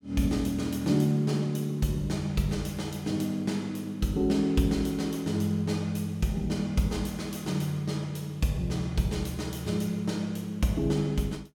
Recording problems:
none

